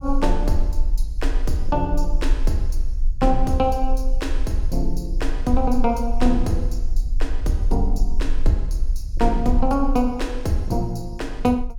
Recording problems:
low-frequency rumble; below 38 Hz, strongest tone 22 Hz, SNR 2 dB

